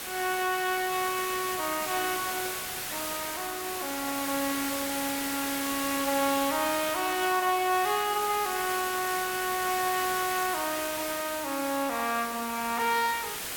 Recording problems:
background hiss; slope -1 dB per octave, SNR 4 dB

